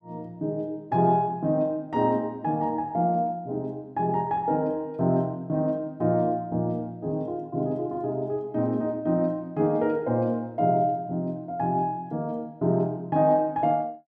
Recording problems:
none

